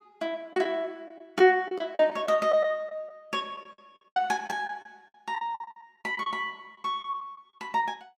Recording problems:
lost packets; 11% of the sound replaced, filled with the last packet

